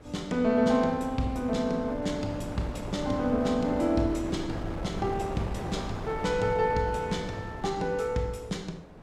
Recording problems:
wind noise; below 620 Hz, SNR 9 dB

